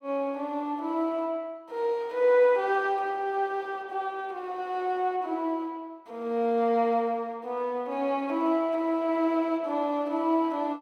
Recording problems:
none

